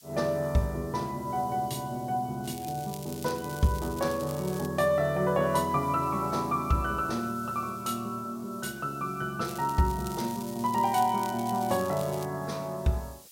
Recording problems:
background hiss; SNR 22 dB
crackle; from 2.5 to 4.5 s and from 9.5 to 12 s; loose cable, SNR 15 dB

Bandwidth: 16 kHz